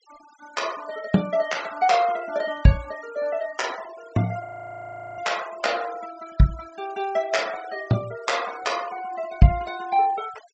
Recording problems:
treble cut off; nothing above 8 kHz
denoising artefacts; signal-to-artefact ratio 19 dB
audio freezing; at 4.5 s for 0.5 s

